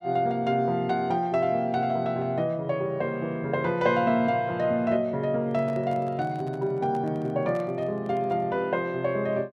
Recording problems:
microphone handling noise; from 5.5 to 8.5 s; peak -13 dB vs average level

